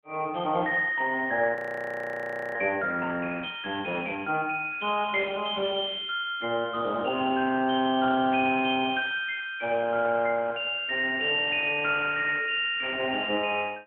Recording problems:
phone line; 150 Hz to 3.6 kHz, AMR-NB
audio freezing; at 1.5 s for 1 s

